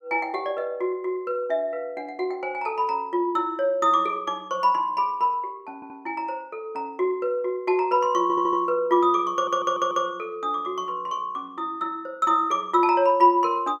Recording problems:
stutter; at 6 s, at 8 s and at 9.5 s

